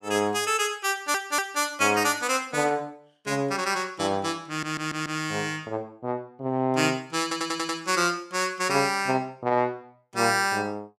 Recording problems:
stutter; at 1 s, at 4.5 s and at 7 s

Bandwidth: 14.5 kHz